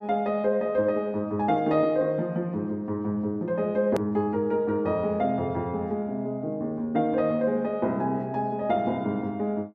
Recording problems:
hard cut with a click; at 4 s

